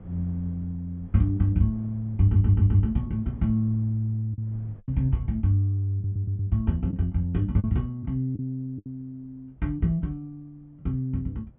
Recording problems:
low-pass filter; nothing above 3.5 kHz
wind noise; below 220 Hz, SNR 25 dB
packet loss; 3% of the sound replaced, filled with the last packet
stutter; at 2 s and at 6 s

